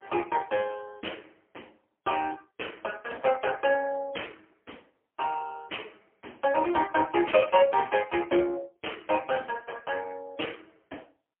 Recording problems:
telephone audio; 240 Hz to 3.3 kHz, AMR-NB, then MP3

